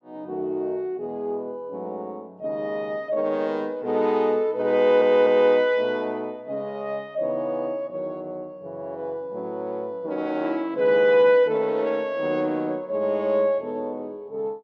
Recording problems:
stutter; at 5 s

